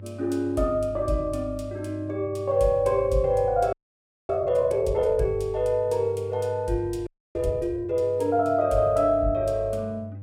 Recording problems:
electrical hum; 50 Hz, harmonics up to 500 Hz, SNR 15 dB
audio freezing; at 3.5 s for 0.5 s and at 7 s

